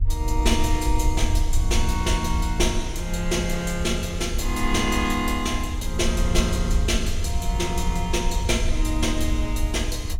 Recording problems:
rumble; below 68 Hz, SNR 4 dB
wind noise; below 70 Hz, SNR 6 dB

